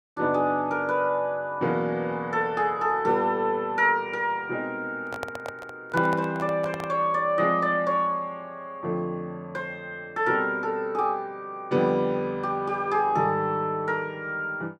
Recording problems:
microphone handling noise; from 5 to 7 s; peak -3 dB vs average level

